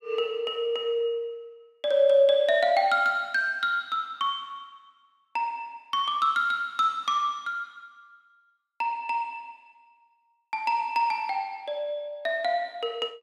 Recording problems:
none

